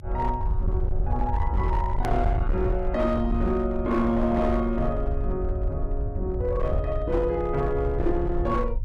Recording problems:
distortion; hard clipping, signal-to-distortion ratio 11 dB
low-frequency rumble; below 74 Hz, SNR 2 dB
hard cut with a click; at 2 s

